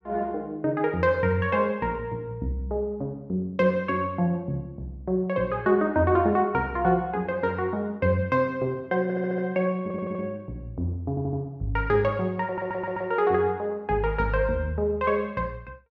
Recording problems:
stutter; 4 times, first at 9 s

